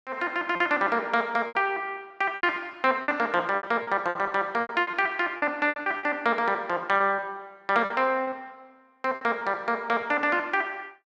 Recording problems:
lost packets; 12% of the sound replaced, filled with repeated pitch periods

